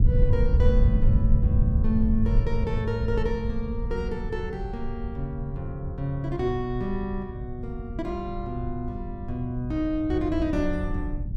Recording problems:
rumble; below 88 Hz, SNR -1 dB

